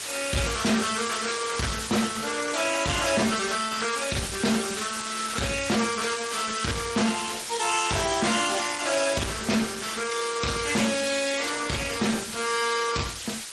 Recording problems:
lossy compression; MP3, then Opus, log-spectral distance 14 dB, nothing above 10.4 kHz
distorted audio; soft clipping, signal-to-distortion ratio 12 dB
background hiss; slope +2 dB per octave, SNR 7 dB

